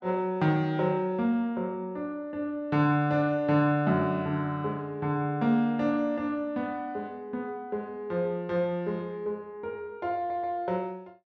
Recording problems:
audio stuttering; at 10 s

